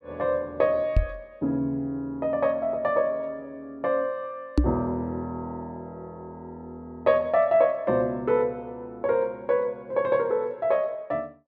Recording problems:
microphone thump; at 1 s and at 4.5 s; peak +8 dB vs average level

